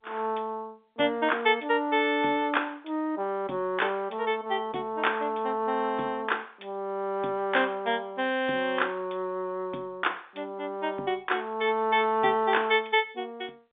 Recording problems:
phone line; 190 Hz to 3.7 kHz, G.711

